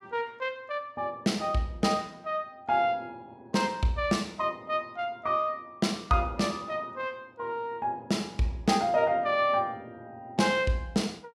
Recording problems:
none

